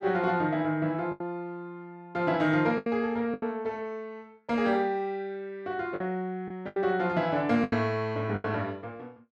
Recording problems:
lost packets; 6% of the sound replaced, filled with the last packet

